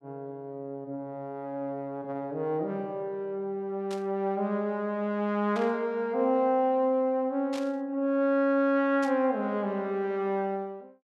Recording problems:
static burst; 4 times, first at 4 s; peak -9 dB vs average level

